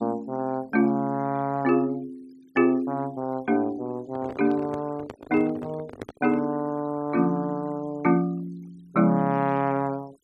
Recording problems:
noise reduction artefacts; signal-to-artefact ratio 27 dB
handling noise; from 4 to 6.5 s; peak -6 dB vs average level

